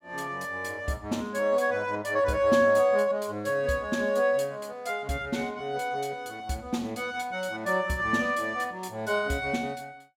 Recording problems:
none

